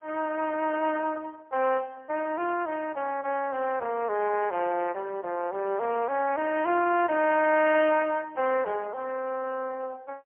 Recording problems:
telephone audio; 320 Hz to 2.6 kHz, AMR-NB, then MP3

